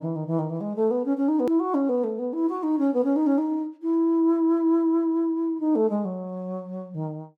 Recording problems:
edit click; at 1.5 s

